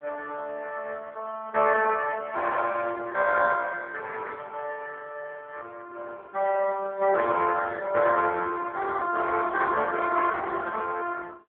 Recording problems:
telephone audio; 240 Hz to 2.6 kHz, AMR-NB

